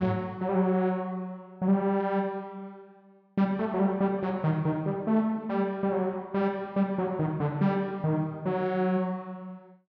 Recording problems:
none

